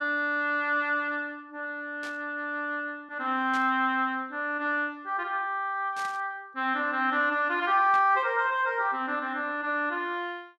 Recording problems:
burst of static; 4 times, first at 2 s; peak -10 dB vs average level

